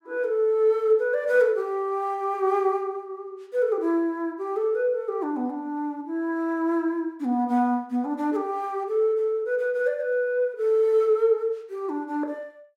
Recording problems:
none

